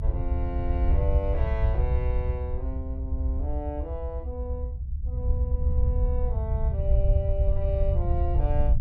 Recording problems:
rumble; below 74 Hz, SNR -8 dB

